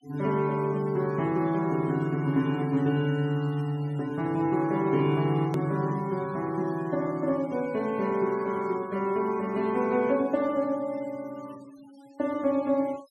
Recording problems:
denoising artefacts; signal-to-artefact ratio 25 dB
click at an edit; at 5.5 s

